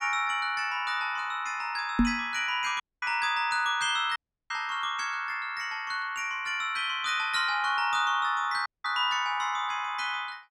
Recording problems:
microphone thump; at 2 s; peak +8 dB vs average level
dropout; at 3 s, at 4 s and at 8.5 s

